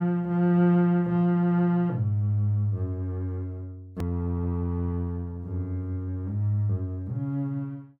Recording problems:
hard cut with a click; at 4 s

